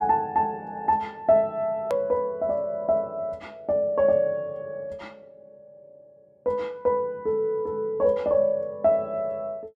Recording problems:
edit click; at 2 s

